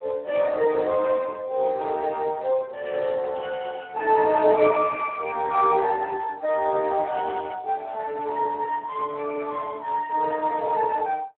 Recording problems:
phone line; 300 Hz to 2.3 kHz, Speex
static burst; 4 times, first at 1 s; peak -18 dB vs average level

